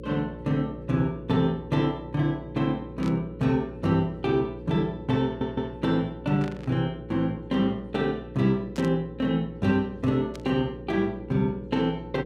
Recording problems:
hum; 60 Hz, harmonics up to 540 Hz, SNR 14 dB
static burst; 4 times, first at 3 s; peak -11 dB vs average level
audio stuttering; at 5.5 s

